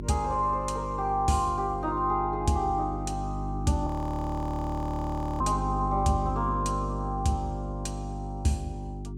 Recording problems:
hum; 50 Hz, harmonics up to 400 Hz, SNR 5 dB
audio freezing; at 4 s for 1.5 s

